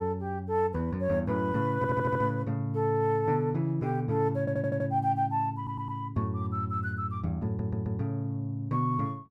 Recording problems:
audio stuttering; 4 times, first at 2 s

